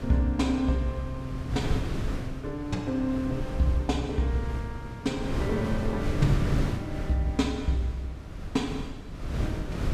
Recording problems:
wind on the microphone; below 210 Hz, SNR 4 dB

